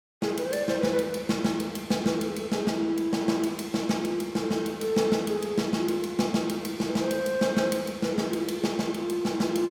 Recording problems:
none

